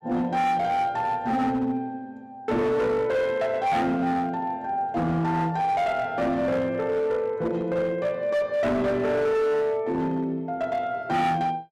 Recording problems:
distortion; hard clipping, signal-to-distortion ratio 10 dB

